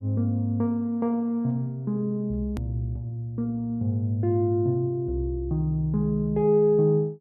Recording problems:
click at an edit; at 2.5 s

